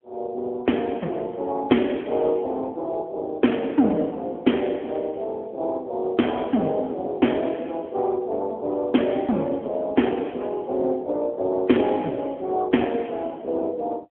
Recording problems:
telephone audio; 170 Hz to 3.4 kHz, AMR-NB

